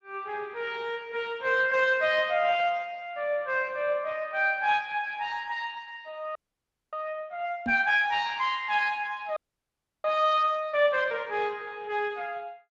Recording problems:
lossy codec; Speex, log-spectral distance 4 dB, nothing above 7.3 kHz
audio freezing; at 6.5 s for 0.5 s and at 9.5 s for 0.5 s
microphone thump; at 7.5 s; peak -2 dB vs average level

